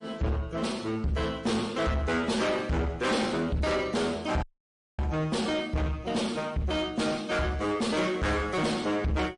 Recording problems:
codec artefacts; MP3, then MP3, log-spectral distance 3 dB, nothing above 10.4 kHz
distorted audio; soft clipping, signal-to-distortion ratio 6 dB
audio cutting out; at 4.5 s for 0.5 s

